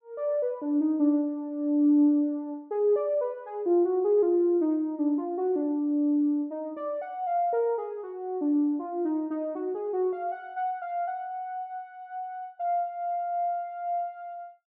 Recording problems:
none

